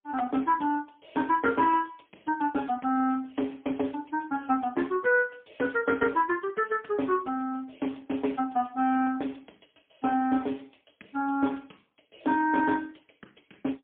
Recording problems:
telephone audio; 220 Hz to 3.4 kHz, AMR-NB, then MP3

